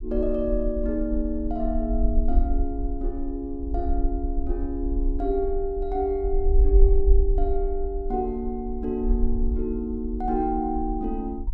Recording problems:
low-frequency rumble; below 48 Hz, SNR 1 dB

